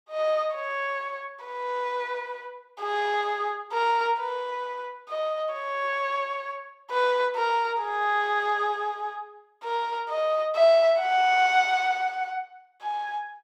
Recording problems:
none

